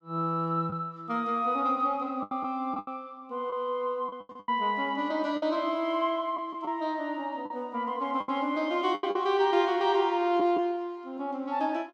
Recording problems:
lost packets; 7% of the sound replaced, filled with the last packet

